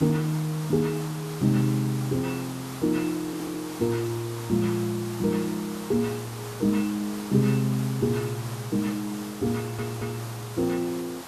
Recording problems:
hiss; SNR 12 dB
stutter; at 3.5 s and at 9.5 s

